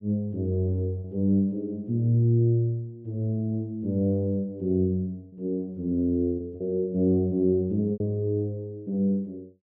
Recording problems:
lost packets; 2% of the sound replaced, filled with repeated pitch periods

